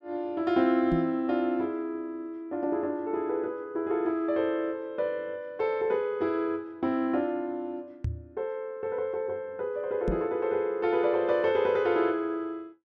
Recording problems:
microphone thump; at 1 s, at 8 s and at 10 s; peak +1 dB vs average level

